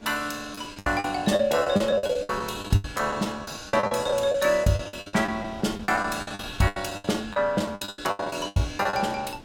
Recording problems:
wind on the microphone; below 640 Hz, SNR 20 dB
packet loss; 20% of the sound replaced, filled with the last packet

